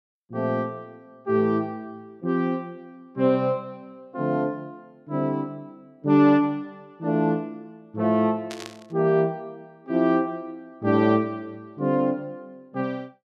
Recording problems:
burst of static; at 8.5 s; peak -10 dB vs average level

